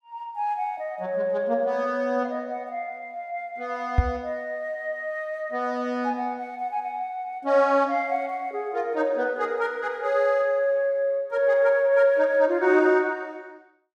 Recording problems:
microphone bump; at 4 s; peak +8 dB vs average level

